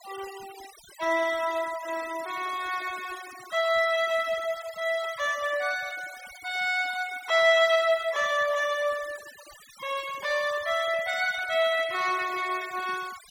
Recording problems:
noise reduction artefacts; signal-to-artefact ratio 17 dB

